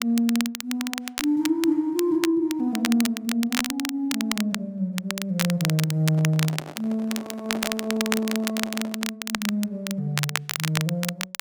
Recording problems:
crackling; vinyl, SNR 5 dB
microphone handling noise; from 6 to 9 s; peak -5 dB vs average level

